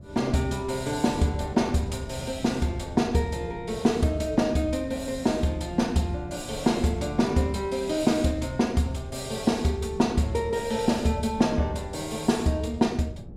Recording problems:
wind noise; below 240 Hz, SNR 16 dB

